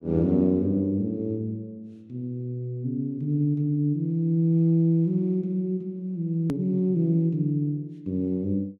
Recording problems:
edit click; at 6.5 s

